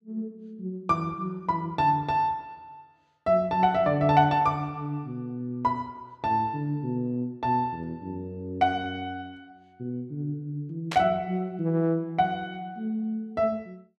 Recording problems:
burst of static; at 11 s; peak -2 dB vs average level

